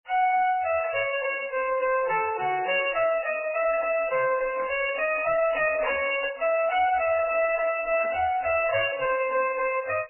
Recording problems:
lossy codec; MP3, then MP3, log-spectral distance 6 dB, nothing above 2.7 kHz
distortion; hard clipping, uneven, signal-to-distortion ratio 8 dB
burst of static; at 4.5 s and at 8 s; peak -11 dB vs average level

